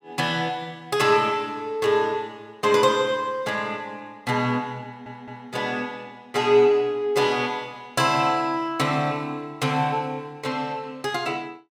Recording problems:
audio stuttering; at 5 s

